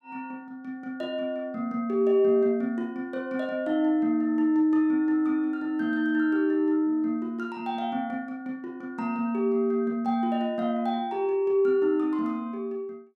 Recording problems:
none

